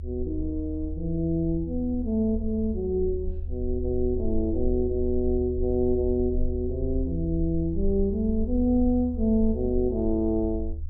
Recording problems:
rumble; below 76 Hz, SNR 7 dB

